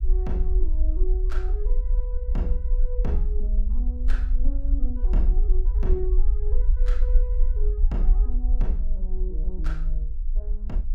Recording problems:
low-frequency rumble; below 44 Hz, SNR -10 dB

